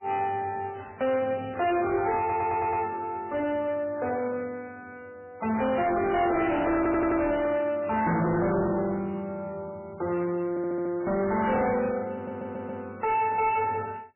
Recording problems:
codec artefacts; MP3, log-spectral distance 3 dB, nothing above 2.4 kHz
distortion; soft clipping, signal-to-distortion ratio 7 dB
audio stuttering; 4 times, first at 2 s

